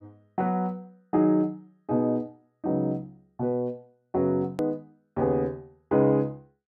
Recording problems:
edit click; at 4.5 s

